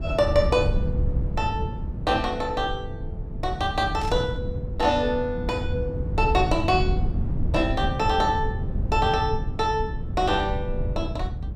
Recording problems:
rumble; below 120 Hz, SNR 4 dB
static burst; at 4 s; peak -12 dB vs average level

